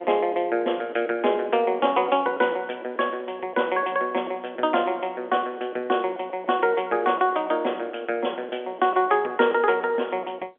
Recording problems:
phone line; 260 Hz to 3.4 kHz, G.711

